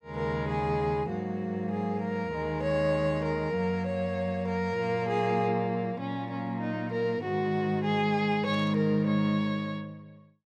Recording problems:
static burst; at 8.5 s; peak -17 dB vs average level

